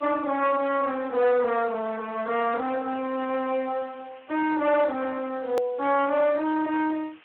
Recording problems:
phone line; 370 Hz to 3.4 kHz, Speex
distorted audio; hard clipping, uneven, signal-to-distortion ratio 9 dB
background hiss; SNR 28 dB
click at an edit; at 5.5 s

